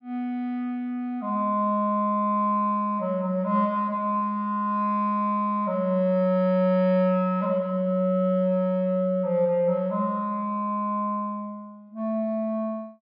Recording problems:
low-pass filter; nothing above 5.5 kHz

